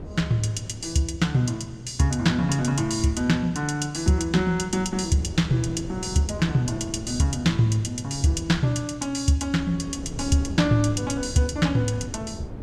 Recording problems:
wind noise; below 280 Hz, SNR 15 dB

